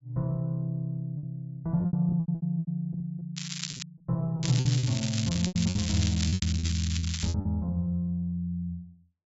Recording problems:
treble cut off; nothing above 8 kHz
lost packets; 13% of the sound replaced, filled with repeated pitch periods
crackle; at 3.5 s and from 4.5 to 7.5 s; loose cable, SNR 6 dB

